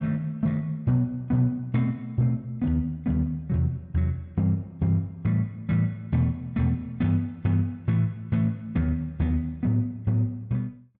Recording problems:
none

